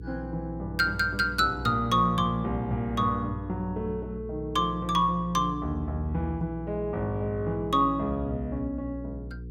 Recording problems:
electrical hum; 60 Hz, harmonics up to 480 Hz, SNR 12 dB

